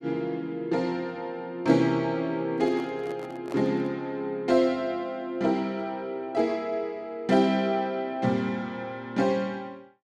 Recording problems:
handling noise; from 2.5 to 4 s; peak -7 dB vs average level

